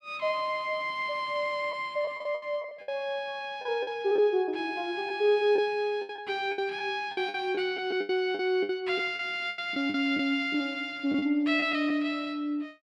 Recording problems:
lost packets; 9% of the sound replaced, filled with the last packet

